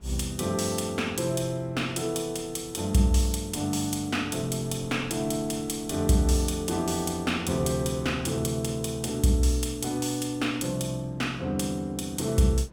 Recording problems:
wind on the microphone; below 440 Hz, SNR 22 dB

